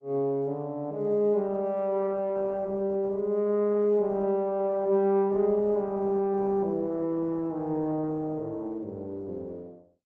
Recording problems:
codec artefacts; Opus, log-spectral distance 2 dB

